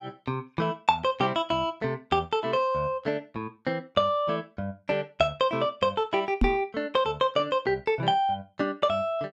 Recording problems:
microphone thump; at 6.5 s; peak +6 dB vs average level

